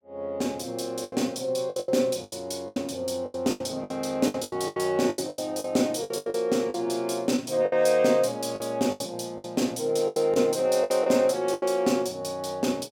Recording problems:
packet loss; 14% of the sound replaced, filled with the last packet

